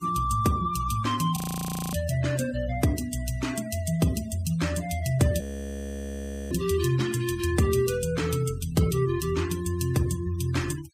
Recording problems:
noise reduction artefacts; signal-to-artefact ratio 17 dB
audio freezing; at 1.5 s for 0.5 s and at 5.5 s for 1 s

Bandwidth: 15.5 kHz